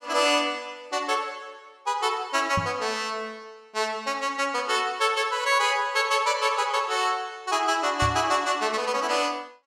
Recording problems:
knock on the microphone; at 2.5 s and at 8 s; peak 0 dB vs average level

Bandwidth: 17 kHz